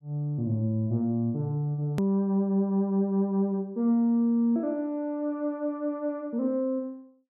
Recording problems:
click at an edit; at 2 s

